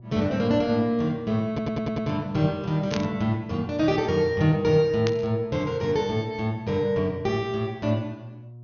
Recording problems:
low-pass filter; nothing above 6.5 kHz
electrical hum; 60 Hz, harmonics up to 600 Hz, SNR 19 dB
stutter; at 1.5 s
burst of static; at 3 s and at 5 s; peak -3 dB vs average level

